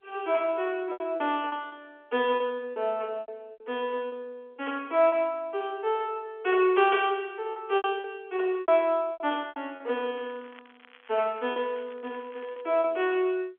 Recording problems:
phone line; 280 Hz to 3.4 kHz, G.711
packet loss; 9% of the sound replaced, filled with repeated pitch periods
crackling; from 10 to 13 s; loose cable, SNR 26 dB

